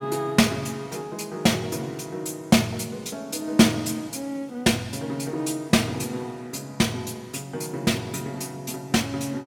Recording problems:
none

